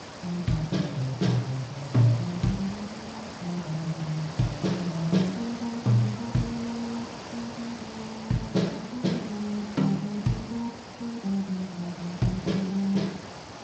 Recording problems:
lossy compression; Speex, log-spectral distance 12 dB, nothing above 16.1 kHz
background hiss; slope -4 dB per octave, SNR 11 dB

